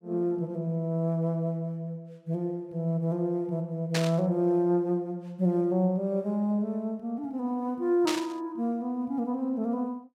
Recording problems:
burst of static; at 4 s and at 8 s; peak +2 dB vs average level

